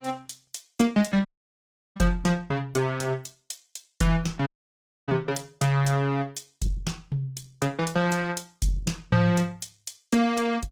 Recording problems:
lossy compression; Opus, log-spectral distance 4 dB, nothing above 19 kHz
dropout; at 1.5 s for 0.5 s and at 4.5 s for 0.5 s

